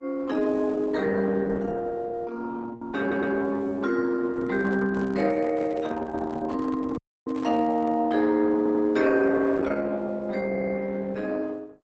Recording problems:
lossy compression; Opus, log-spectral distance 4 dB, nothing above 7.6 kHz
stutter; at 3 s, at 8.5 s and at 10 s
microphone handling noise; from 4.5 to 8 s; peak -8 dB vs average level
dropout; at 7 s

